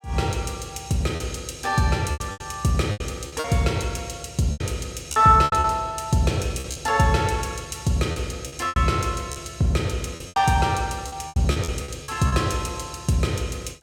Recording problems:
packet loss; 10% of the sound replaced, filled with repeated pitch periods

